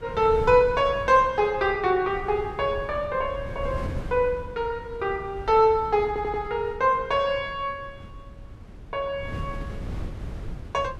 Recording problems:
wind noise; below 160 Hz, SNR 14 dB
audio stuttering; at 6 s

